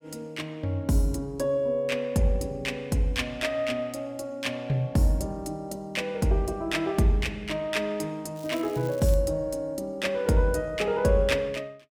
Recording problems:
crackle; at 8.5 s; loose cable, SNR 21 dB

